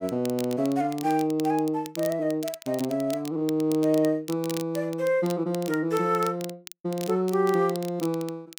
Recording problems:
crackling; vinyl, SNR 16 dB

